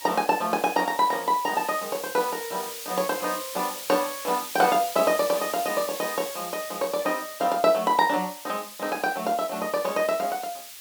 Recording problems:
hiss; slope +4 dB per octave, SNR 10 dB

